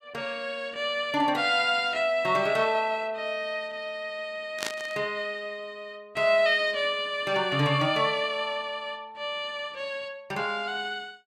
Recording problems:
static burst; at 4.5 s; peak 0 dB vs average level

